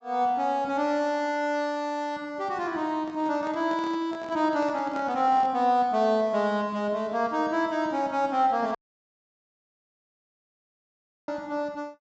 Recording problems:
treble missing; nothing above 8 kHz
handling noise; from 3 to 5.5 s; peak -11 dB vs average level
dropout; at 9 s for 2.5 s

